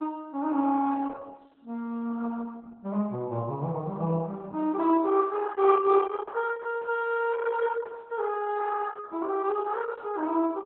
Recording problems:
lossy compression; Opus, log-spectral distance 3 dB

